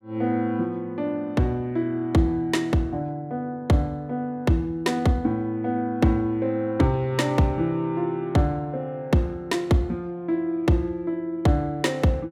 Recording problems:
none

